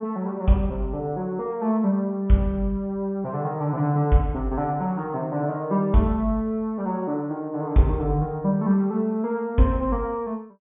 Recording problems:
treble missing; nothing above 3.5 kHz

